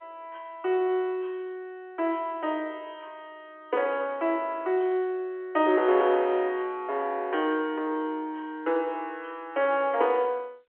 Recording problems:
telephone audio; 300 Hz to 3.4 kHz, G.711

